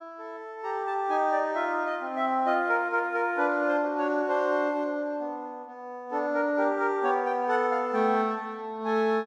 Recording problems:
none

